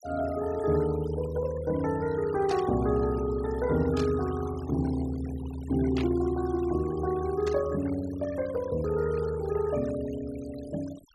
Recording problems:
denoising artefacts; signal-to-artefact ratio 19 dB
static burst; 4 times, first at 2.5 s; peak -7 dB vs average level

